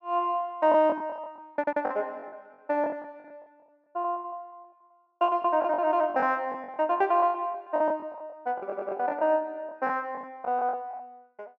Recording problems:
lost packets; 15% of the sound replaced, filled with the last packet
stutter; at 1.5 s and at 8.5 s

